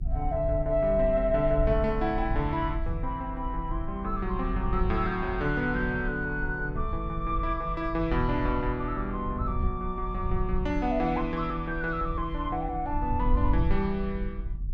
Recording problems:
rumble; below 66 Hz, SNR 5 dB

